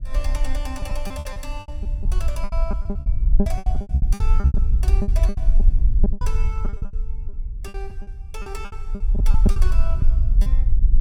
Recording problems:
low-frequency rumble; below 58 Hz, SNR -14 dB
lost packets; 19% of the sound replaced, filled with repeated pitch periods

